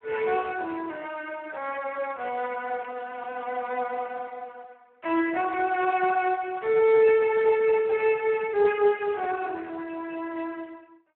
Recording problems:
telephone audio; 340 Hz to 2.9 kHz, Speex

